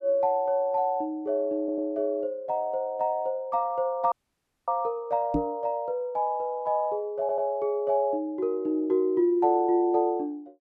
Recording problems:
stutter; at 1.5 s and at 7 s
dropout; at 4 s for 0.5 s
microphone thump; at 5.5 s; peak +3 dB vs average level

